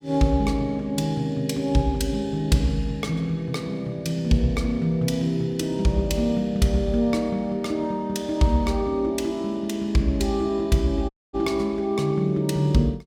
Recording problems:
dropout; at 11 s

